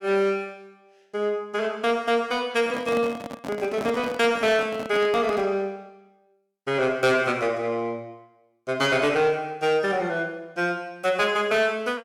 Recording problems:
distorted audio; soft clipping, signal-to-distortion ratio 12 dB
handling noise; from 2.5 to 5.5 s; peak -3 dB vs average level

